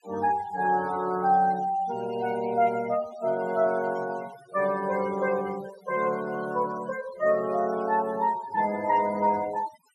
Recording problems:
denoising artefacts; signal-to-artefact ratio 17 dB

